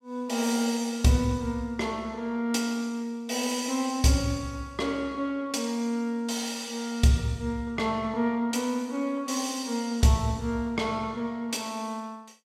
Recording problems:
none

